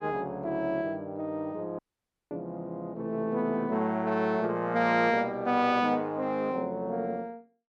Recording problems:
dropout; at 2 s for 0.5 s

